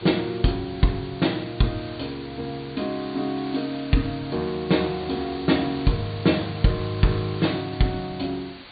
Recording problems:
low-pass filter; nothing above 4.6 kHz
background hiss; SNR 15 dB

